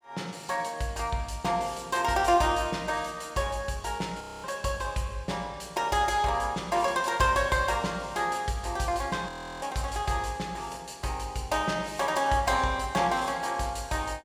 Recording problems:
audio freezing; at 4 s and at 9.5 s

